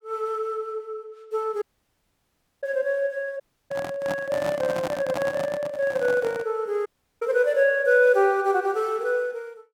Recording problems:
dropout; at 1.5 s for 1 s, at 3.5 s and at 7 s
microphone handling noise; from 3.5 to 6.5 s; peak -2 dB vs average level

